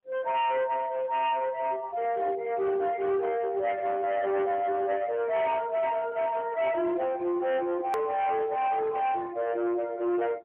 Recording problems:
telephone audio; 950 Hz to 2 kHz, AMR-NB
distorted audio; hard clipping, uneven, signal-to-distortion ratio 10 dB
edit click; at 8 s

